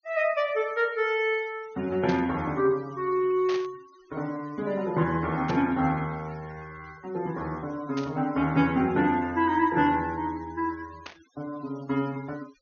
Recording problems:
low-pass filter; nothing above 6.5 kHz
denoising artefacts; signal-to-artefact ratio 23 dB
burst of static; 5 times, first at 2 s; peak -7 dB vs average level

